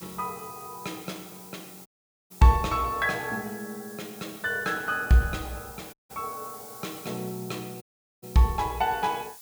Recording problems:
background hiss; SNR 16 dB
dropout; at 2 s, at 6 s and at 8 s

